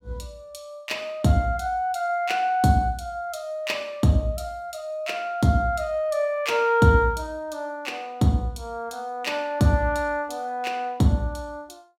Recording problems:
none

